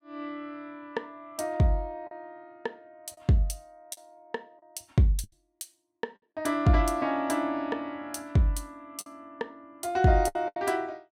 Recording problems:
lost packets; 4% of the sound replaced, filled with the last packet

